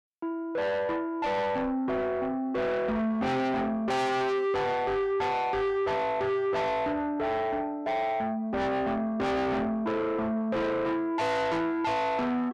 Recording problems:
distorted audio; soft clipping, signal-to-distortion ratio 6 dB

